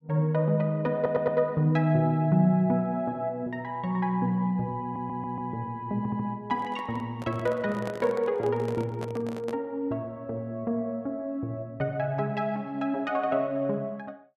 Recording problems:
stutter; at 1 s, at 5 s and at 6 s
handling noise; from 6.5 to 9.5 s; peak -5 dB vs average level

